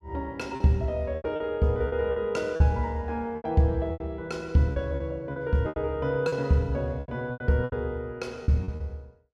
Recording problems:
lost packets; 11% of the sound replaced, filled with repeated pitch periods

